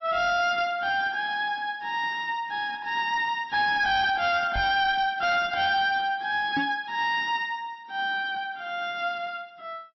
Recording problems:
lossy codec; MP3, log-spectral distance 2 dB, nothing above 5.5 kHz
distortion; hard clipping, signal-to-distortion ratio 11 dB
microphone bump; at 4.5 s and at 6.5 s; peak 0 dB vs average level

